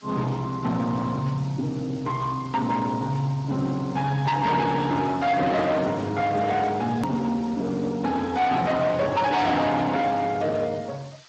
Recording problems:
lossy codec; Opus, then Speex, log-spectral distance 6 dB, nothing above 13.3 kHz
distorted audio; hard clipping, uneven, signal-to-distortion ratio 8 dB
hiss; SNR 27 dB
click at an edit; at 7 s

